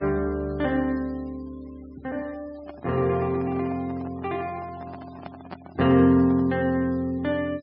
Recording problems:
low-pass filter; nothing above 5.5 kHz
noise reduction artefacts; signal-to-artefact ratio 27 dB
microphone handling noise; from 2.5 to 6.5 s; peak -9 dB vs average level

